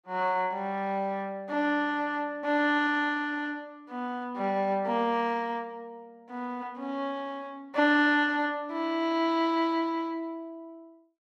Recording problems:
none

